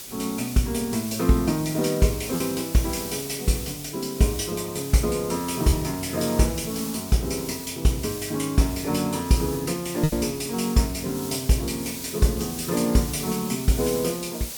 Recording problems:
background hiss; SNR 10 dB
lost packets; 1% of the sound replaced, filled with repeated pitch periods

